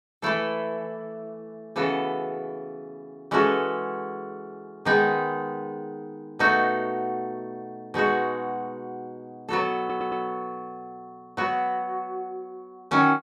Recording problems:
audio stuttering; at 10 s

